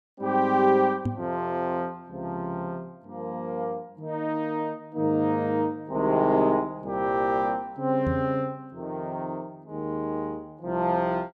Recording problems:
microphone thump; at 1 s and at 8 s; peak +2 dB vs average level

